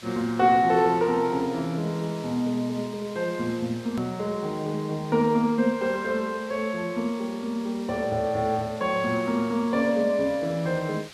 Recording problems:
background hiss; SNR 20 dB
edit click; at 4 s

